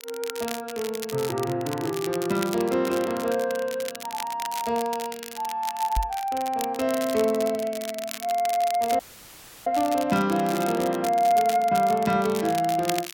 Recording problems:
crackling; vinyl, SNR 12 dB
knock on the microphone; at 6 s; peak +1 dB vs average level
dropout; at 9 s for 0.5 s

